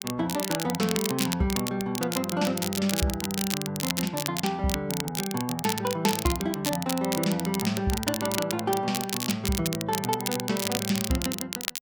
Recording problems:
crackling; vinyl, SNR 3 dB

